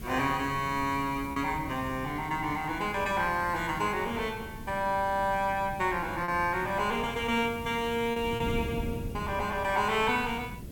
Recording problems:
background hiss; slope +1 dB per octave, SNR 22 dB
wind noise; below 240 Hz, SNR 12 dB
packet loss; 1.5% of the sound replaced, filled with repeated pitch periods

